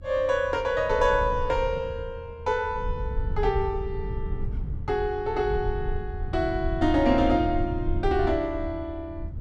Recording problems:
rumble; below 88 Hz, SNR 7 dB

